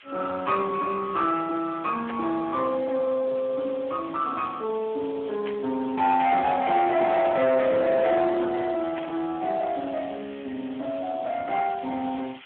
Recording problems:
telephone audio; 220 Hz to 3.6 kHz, Speex
distortion; soft clipping, signal-to-distortion ratio 11 dB
hiss; SNR 21 dB
burst of static; at 2 s, at 5.5 s and at 9 s; peak -6 dB vs average level

